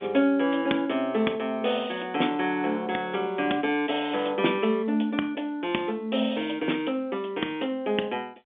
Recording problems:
phone line; 240 Hz to 3.6 kHz, G.711

